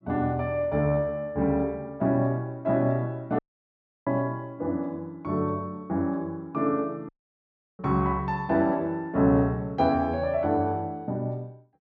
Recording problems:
audio cutting out; at 3.5 s for 0.5 s and at 7 s for 0.5 s

